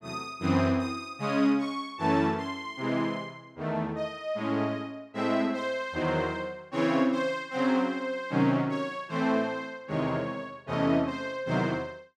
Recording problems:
none

